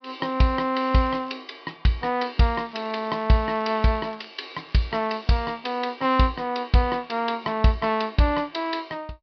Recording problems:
treble missing; nothing above 5.5 kHz
crackle; at 1 s and from 2.5 to 5.5 s; loose cable, SNR 27 dB

